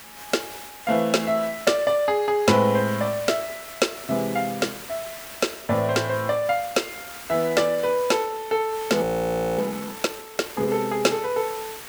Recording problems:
background hiss; slope -1 dB per octave, SNR 14 dB
frozen audio; at 9 s for 0.5 s

